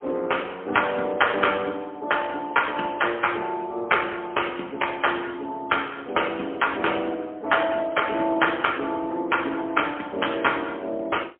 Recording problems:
phone line; 240 Hz to 3.3 kHz, AMR-NB, then MP3

